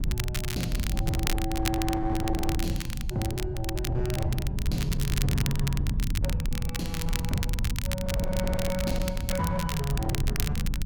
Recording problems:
distorted audio; hard clipping, uneven, signal-to-distortion ratio 12 dB
low-frequency rumble; below 120 Hz, SNR 0 dB
crackle; vinyl, SNR 4 dB

